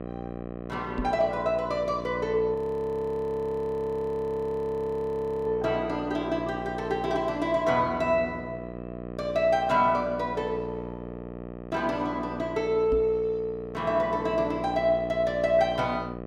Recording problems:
electrical hum; 60 Hz, harmonics up to 1.4 kHz, SNR 11 dB
microphone bump; at 1 s and at 13 s; peak -1 dB vs average level
audio freezing; at 2.5 s for 3 s

